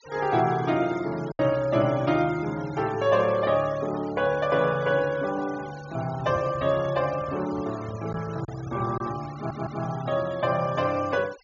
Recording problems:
treble cut off; nothing above 7.1 kHz
noise reduction artefacts; signal-to-artefact ratio 19 dB
lost packets; 1.2% of the sound replaced, filled with silence
microphone handling noise; from 6 to 9 s; peak -5 dB vs average level
stutter; at 9.5 s

